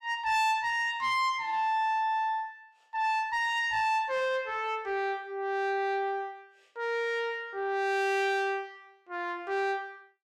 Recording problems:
distortion; soft clipping, signal-to-distortion ratio 11 dB

